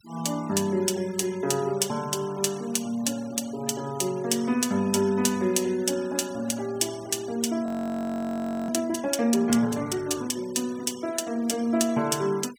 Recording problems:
denoising artefacts; signal-to-artefact ratio 20 dB
frozen audio; at 7.5 s for 1 s

